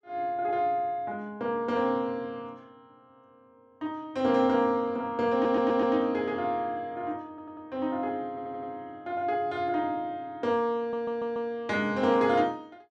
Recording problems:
stutter; 4 times, first at 5.5 s

